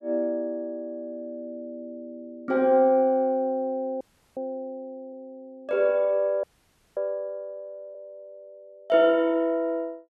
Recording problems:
audio freezing; at 4 s and at 6.5 s for 0.5 s

